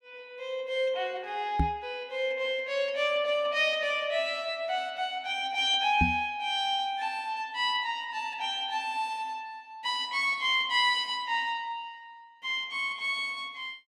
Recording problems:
microphone thump; at 1.5 s and at 6 s; peak +5 dB vs average level

